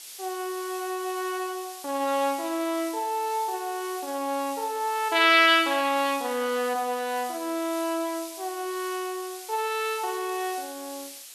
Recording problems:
background hiss; slope +4 dB per octave, SNR 14 dB

